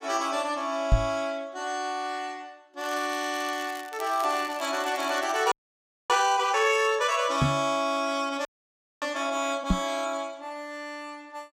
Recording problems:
microphone bump; at 1 s, at 7.5 s and at 9.5 s; peak +9 dB vs average level
crackling; from 3 to 5.5 s; loose cable, SNR 17 dB
frozen audio; at 5.5 s for 0.5 s and at 8.5 s for 0.5 s

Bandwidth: 15.5 kHz